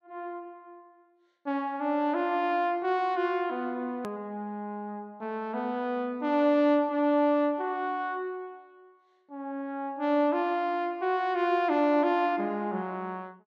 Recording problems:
click at an edit; at 4 s

